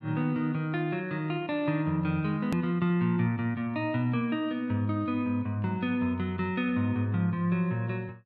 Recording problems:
edit click; at 2.5 s

